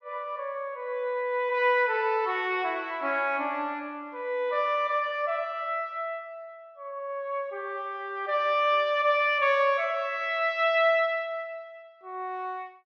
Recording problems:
none

